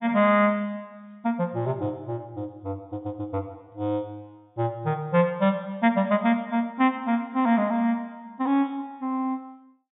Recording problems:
low-pass filter; nothing above 4 kHz

